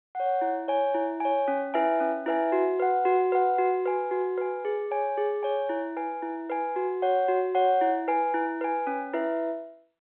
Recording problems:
phone line; 260 Hz to 3.5 kHz, G.711

